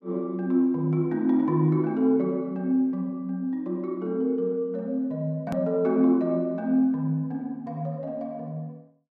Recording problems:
hard cut with a click; at 5.5 s

